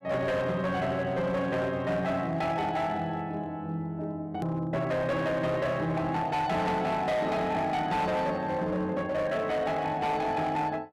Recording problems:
distorted audio; hard clipping, signal-to-distortion ratio 10 dB
hard cut with a click; at 4.5 s

